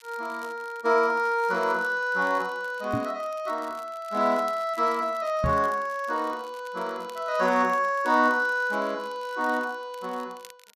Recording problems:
crackle; vinyl, SNR 26 dB
microphone thump; at 3 s and at 5.5 s; peak +1 dB vs average level

